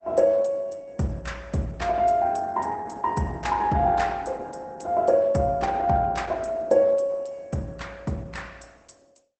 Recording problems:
codec artefacts; Opus, log-spectral distance 3 dB, nothing above 8.2 kHz

